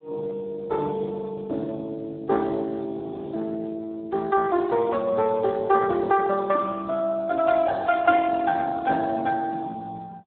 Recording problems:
phone line; 280 Hz to 2.8 kHz, Speex
audio freezing; at 3 s

